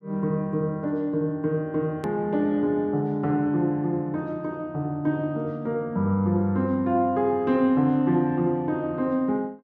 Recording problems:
edit click; at 2 s

